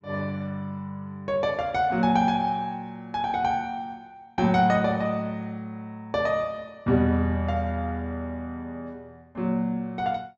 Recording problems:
treble cut off; nothing above 8 kHz

